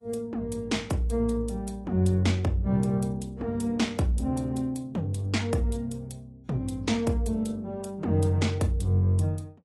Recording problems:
codec artefacts; AAC, log-spectral distance 2 dB, nothing above 11.3 kHz

